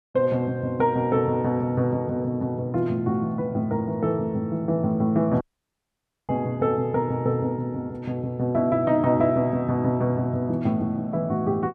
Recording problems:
dropout; at 5.5 s for 1 s

